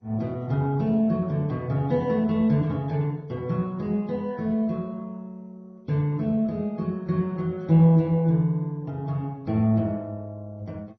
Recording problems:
codec artefacts; Vorbis, then MP2, log-spectral distance 2 dB, nothing above 5.7 kHz

